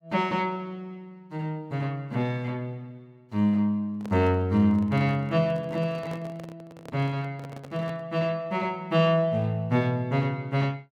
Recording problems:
microphone handling noise; from 4 to 8 s; peak -11 dB vs average level

